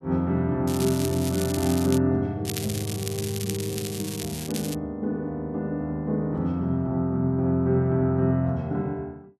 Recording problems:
crackle; from 0.5 to 2 s and from 2.5 to 5 s; loose cable, SNR 9 dB

